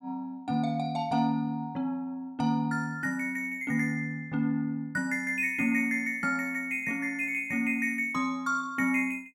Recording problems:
none

